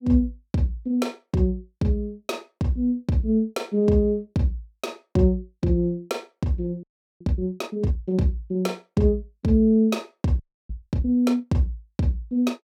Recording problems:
audio freezing; at 7 s and at 10 s

